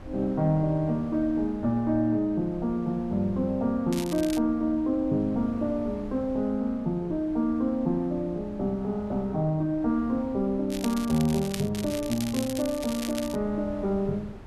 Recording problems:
wind on the microphone; below 280 Hz, SNR 18 dB
crackling; at 4 s and from 11 to 13 s; loose cable, SNR 12 dB

